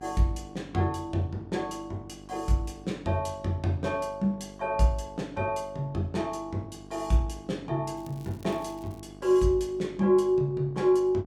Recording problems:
hum; 50 Hz, harmonics up to 1.2 kHz, SNR 19 dB
crackling; from 8 to 9 s; loose cable, SNR 27 dB

